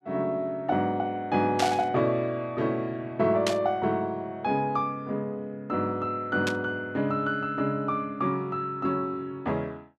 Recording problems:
burst of static; at 1.5 s, at 3.5 s and at 6.5 s; peak +3 dB vs average level

